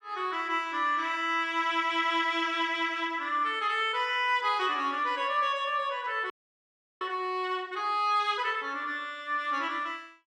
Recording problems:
audio freezing; at 6.5 s for 0.5 s

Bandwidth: 13.5 kHz